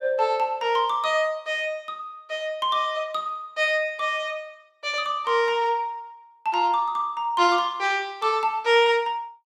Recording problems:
none

